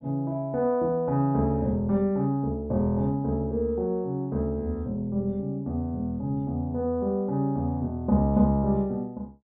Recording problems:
treble missing; nothing above 4 kHz

